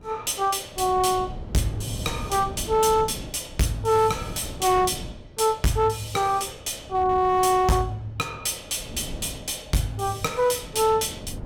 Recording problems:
distortion; hard clipping, signal-to-distortion ratio 11 dB
wind on the microphone; below 260 Hz, SNR 15 dB

